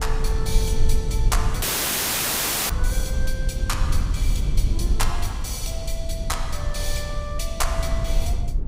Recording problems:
rumble; below 62 Hz, strongest tone 20 Hz, SNR -4 dB
dropout; at 1.5 s for 1 s

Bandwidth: 15.5 kHz